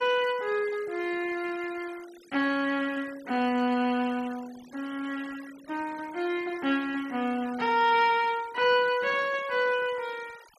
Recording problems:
denoising artefacts; signal-to-artefact ratio 21 dB

